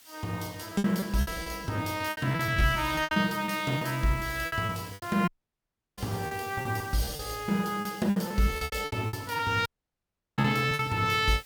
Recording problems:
hiss; slope +2 dB per octave, SNR 20 dB
lost packets; 15% of the sound replaced, filled with repeated pitch periods
dropout; at 5.5 s for 0.5 s and at 9.5 s for 0.5 s

